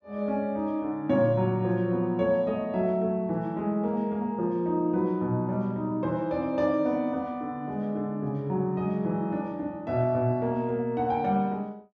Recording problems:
none

